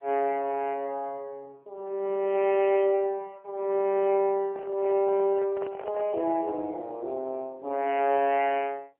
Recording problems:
telephone audio; 280 Hz to 3.1 kHz, AMR-NB
handling noise; from 4.5 to 6 s; peak -7 dB vs average level

